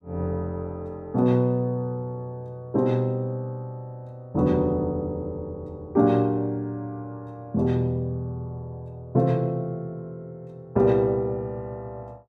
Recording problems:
none

